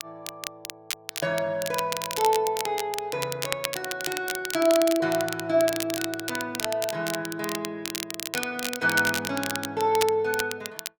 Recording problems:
crackle; vinyl, SNR 6 dB

